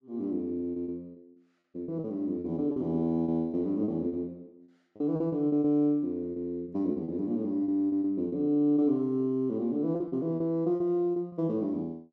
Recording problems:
lost packets; 11% of the sound replaced, filled with repeated pitch periods

